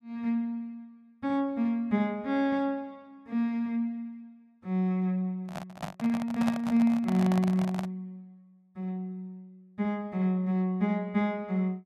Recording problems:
handling noise; from 5.5 to 8 s; peak 0 dB vs average level

